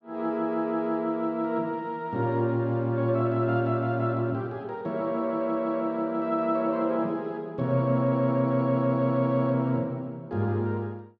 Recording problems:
none

